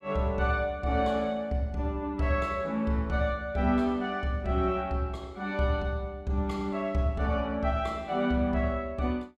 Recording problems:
none

